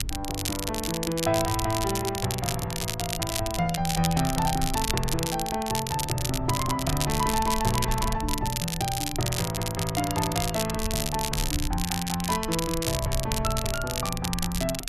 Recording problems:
low-frequency rumble; below 84 Hz, SNR 10 dB
crackle; vinyl, SNR 3 dB

